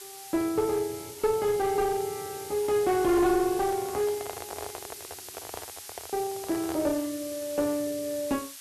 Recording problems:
distorted audio; hard clipping, uneven, signal-to-distortion ratio 11 dB
background hiss; slope +4 dB per octave, SNR 13 dB
microphone handling noise; from 3.5 to 7 s; peak -5 dB vs average level

